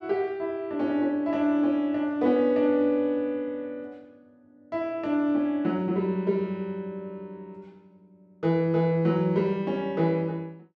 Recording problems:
none

